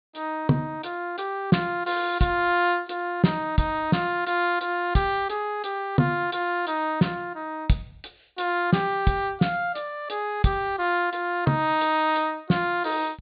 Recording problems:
treble cut off; nothing above 4.5 kHz

